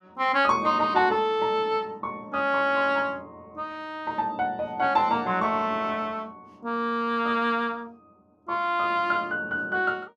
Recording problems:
none

